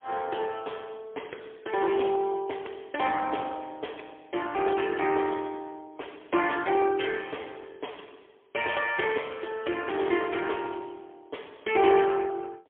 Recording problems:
telephone audio; 300 Hz to 3.1 kHz, AMR-NB, then MP3

